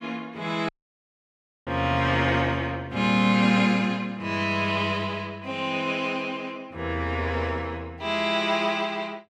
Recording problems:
audio cutting out; at 0.5 s for 1 s

